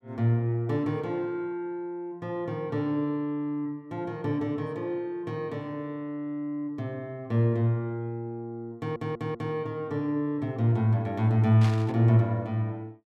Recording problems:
audio stuttering; at 9 s
burst of static; at 12 s; peak -6 dB vs average level

